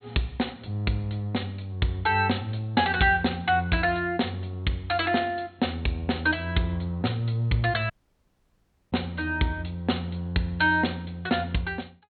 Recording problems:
low-pass filter; nothing above 4.4 kHz
audio cutting out; at 8 s for 1 s

